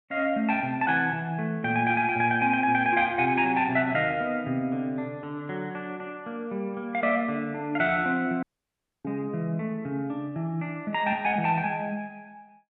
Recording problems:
audio cutting out; at 8.5 s for 0.5 s

